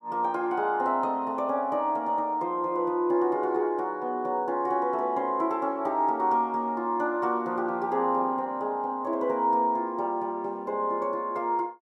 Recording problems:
none

